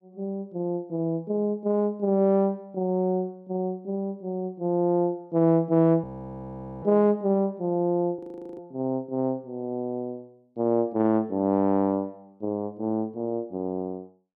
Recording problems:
audio freezing; at 6 s for 1 s and at 8 s

